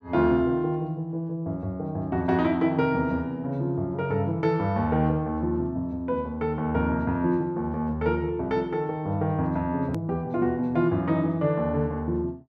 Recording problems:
edit click; at 10 s

